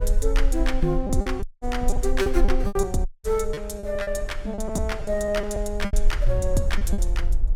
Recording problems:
low-frequency rumble; below 40 Hz, strongest tone 18 Hz, SNR 2 dB
wind on the microphone; below 590 Hz, SNR 21 dB
packet loss; 11% of the sound replaced, filled with repeated pitch periods
dropout; at 1.5 s and at 3 s

